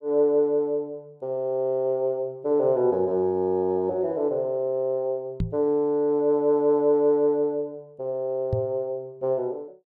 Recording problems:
microphone thump; at 5.5 s and at 8.5 s; peak +1 dB vs average level

